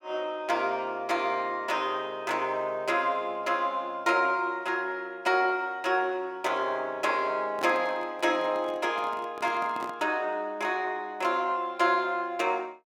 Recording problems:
handling noise; from 7.5 to 10 s; peak -5 dB vs average level

